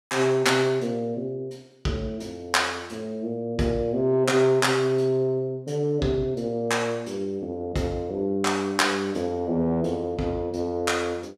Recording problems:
none

